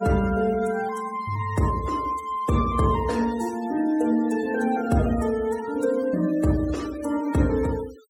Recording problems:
noise reduction artefacts; signal-to-artefact ratio 20 dB

